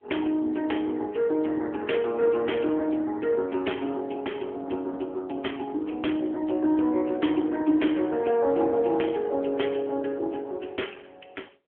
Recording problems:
phone line; 240 Hz to 3.3 kHz, AMR-NB

